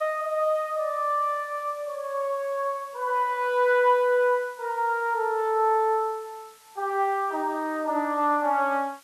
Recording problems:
hiss; slope +1 dB per octave, SNR 27 dB

